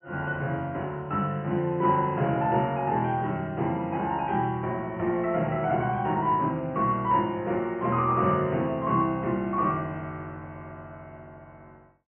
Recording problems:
treble missing; nothing above 3 kHz

